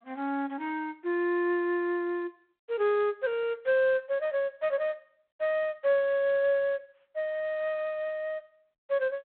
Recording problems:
phone line; 300 Hz to 3.7 kHz, G.726

